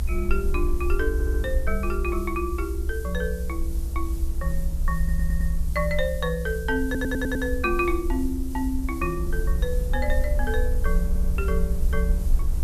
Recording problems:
hiss; slope +5 dB per octave, SNR 17 dB
rumble; below 64 Hz, SNR -1 dB
audio stuttering; 4 times, first at 1 s

